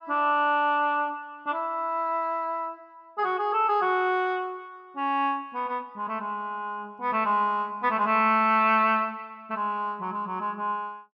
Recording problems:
none

